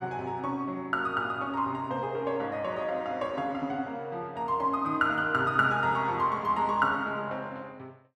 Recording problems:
none

